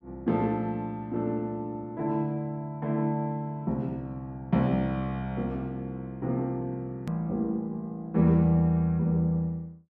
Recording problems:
edit click; at 7 s

